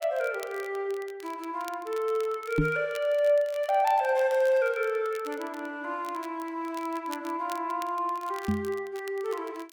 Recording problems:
crackle; vinyl, SNR 20 dB
microphone bump; at 2.5 s and at 8.5 s; peak +7 dB vs average level

